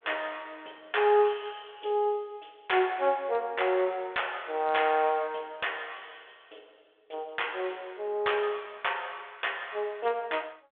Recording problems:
telephone audio; 320 Hz to 3.6 kHz, G.726

